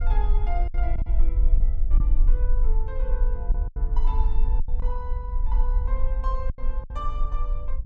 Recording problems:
low-frequency rumble; below 42 Hz, SNR -12 dB
lost packets; 6% of the sound replaced, filled with silence

